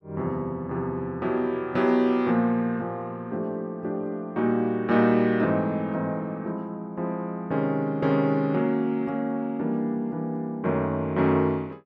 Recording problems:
none

